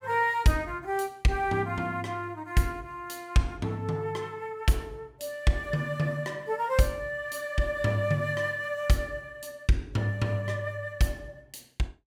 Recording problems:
none

